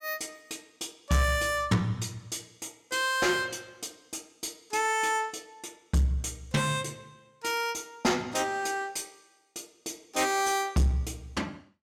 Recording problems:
distortion; soft clipping, signal-to-distortion ratio 10 dB

